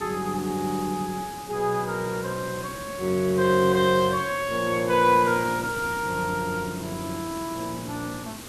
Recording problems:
hiss; SNR 13 dB

